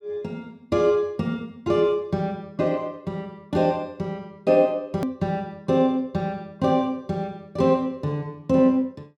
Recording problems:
edit click; at 5 s

